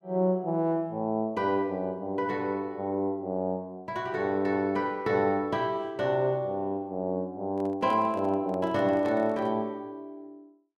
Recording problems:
handling noise; from 7.5 to 9.5 s; peak -10 dB vs average level

